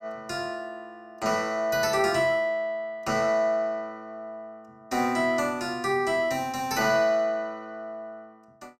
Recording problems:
none

